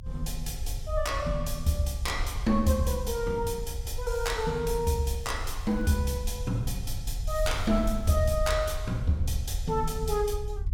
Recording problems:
rumble; below 68 Hz, SNR 6 dB
crackle; at 5 s and from 7.5 to 9 s; loose cable, SNR 29 dB

